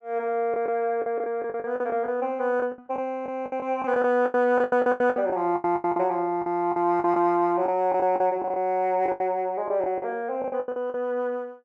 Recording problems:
packet loss; 16% of the sound replaced, filled with the last packet

